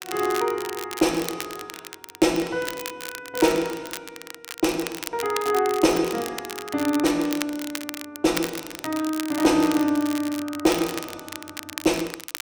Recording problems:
crackle; vinyl, SNR 11 dB

